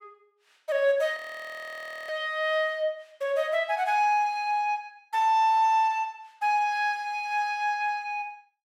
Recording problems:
frozen audio; at 1 s for 1 s

